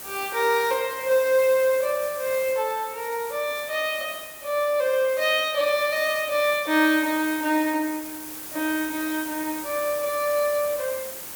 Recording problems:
hiss; slope -2 dB per octave, SNR 11 dB

